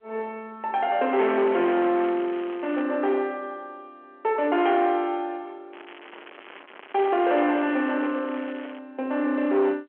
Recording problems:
telephone audio; 240 Hz to 3.6 kHz, G.711
distortion; soft clipping, signal-to-distortion ratio 10 dB
crackling; from 1 to 3 s and from 5.5 to 9 s; loose cable, SNR 19 dB

